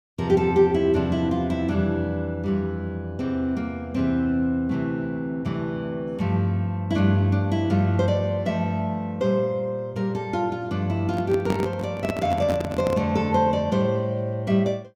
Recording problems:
handling noise; from 11 to 13 s; peak +1 dB vs average level

